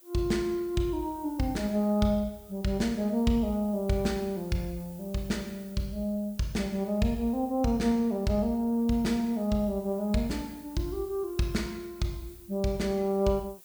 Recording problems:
background hiss; SNR 22 dB

